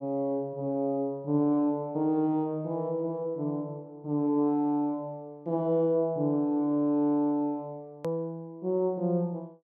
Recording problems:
click at an edit; at 8 s

